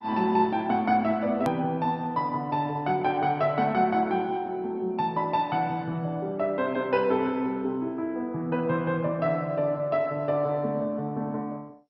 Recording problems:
codec artefacts; MP2, log-spectral distance 2 dB, nothing above 13.1 kHz
hard cut with a click; at 1.5 s

